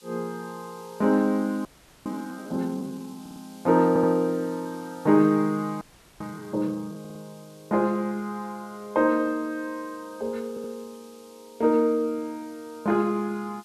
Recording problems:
background hiss; SNR 26 dB
audio freezing; at 1.5 s and at 6 s
stutter; 4 times, first at 3 s

